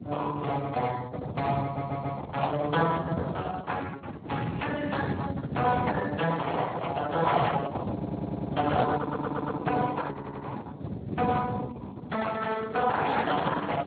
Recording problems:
lossy codec; Opus, then Speex, log-spectral distance 5 dB, nothing above 3.8 kHz
wind on the microphone; below 280 Hz, SNR 5 dB
stutter; 4 times, first at 1.5 s

